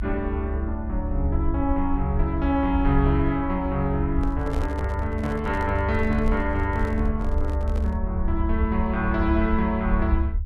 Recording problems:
low-frequency rumble; below 72 Hz, SNR 2 dB
handling noise; from 4 to 8 s; peak -6 dB vs average level

